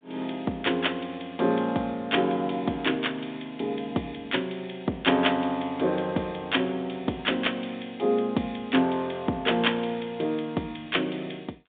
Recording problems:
telephone audio; 170 Hz to 3.7 kHz, G.726

